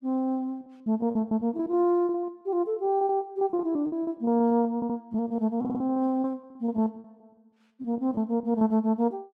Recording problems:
packet loss; 17% of the sound replaced, filled with repeated pitch periods
audio stuttering; at 5 s and at 5.5 s

